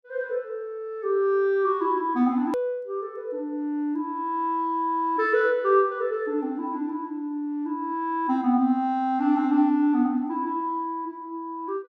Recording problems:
click at an edit; at 2.5 s

